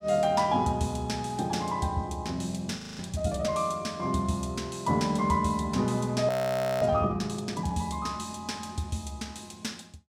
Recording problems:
frozen audio; at 3 s and at 6.5 s for 0.5 s

